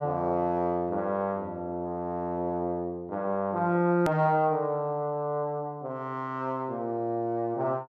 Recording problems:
click at an edit; at 4 s

